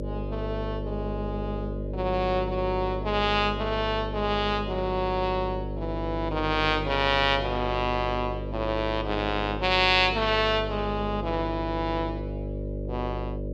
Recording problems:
hum; 50 Hz, harmonics up to 600 Hz, SNR 7 dB

